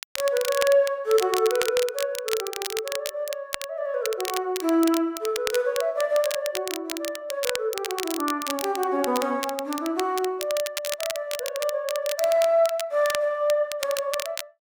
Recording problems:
crackle; vinyl, SNR 8 dB

